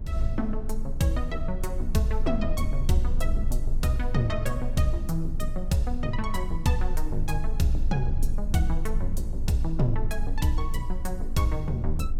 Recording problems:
low-frequency rumble; below 36 Hz, strongest tone 20 Hz, SNR 4 dB

